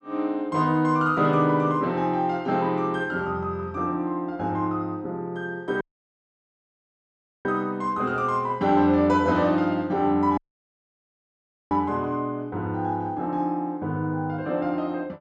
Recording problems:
dropout; at 6 s for 1.5 s and at 10 s for 1.5 s

